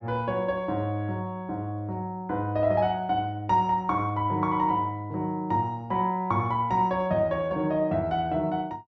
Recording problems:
none

